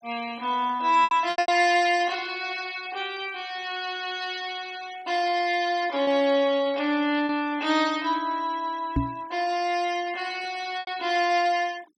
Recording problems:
noise reduction artefacts; signal-to-artefact ratio 23 dB
lost packets; 4% of the sound replaced, filled with repeated pitch periods
knock on the microphone; at 9 s; peak +4 dB vs average level

